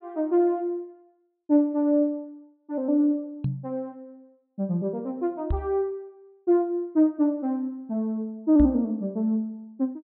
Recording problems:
low-pass filter; nothing above 4.2 kHz
knock on the microphone; at 3.5 s, at 5.5 s and at 8.5 s; peak +2 dB vs average level

